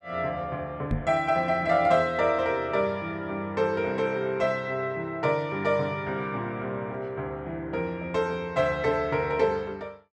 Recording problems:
microphone thump; at 1 s; peak +2 dB vs average level

